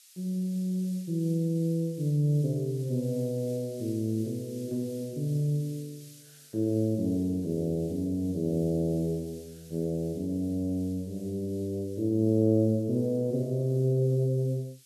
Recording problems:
hiss; SNR 24 dB

